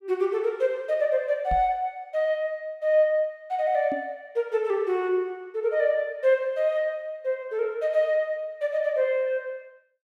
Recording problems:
microphone bump; at 1.5 s and at 4 s; peak -4 dB vs average level

